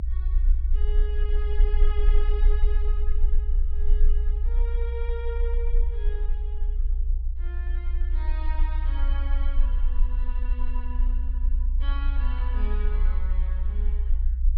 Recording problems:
low-pass filter; nothing above 5.5 kHz
rumble; below 58 Hz, strongest tone 30 Hz, SNR -14 dB

